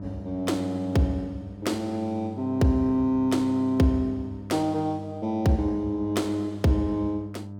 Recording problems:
electrical hum; 50 Hz, harmonics up to 700 Hz, SNR 13 dB

